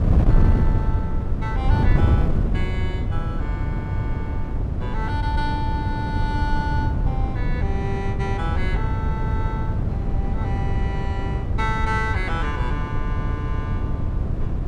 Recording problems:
wind noise; below 130 Hz, SNR -7 dB

